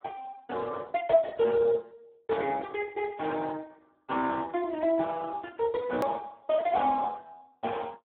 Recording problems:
phone line; 280 Hz to 2 kHz, Speex
click at an edit; at 6 s

